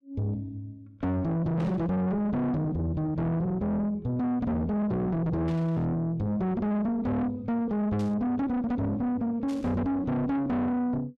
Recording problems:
distortion; soft clipping, signal-to-distortion ratio 7 dB
burst of static; 4 times, first at 1.5 s; peak -15 dB vs average level

